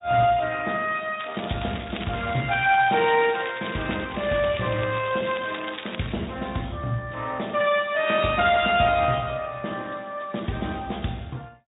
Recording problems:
treble cut off; nothing above 3.7 kHz
lossy codec; MP3, then Speex, log-spectral distance 8 dB
crackling; from 1 to 4 s and from 4 to 6 s; loose cable, SNR 12 dB

